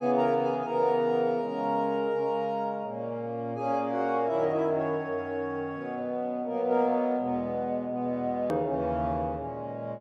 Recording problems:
click at an edit; at 8.5 s

